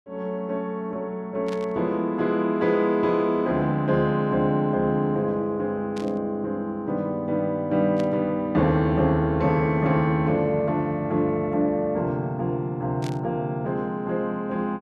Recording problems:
burst of static; 4 times, first at 1.5 s; peak -11 dB vs average level

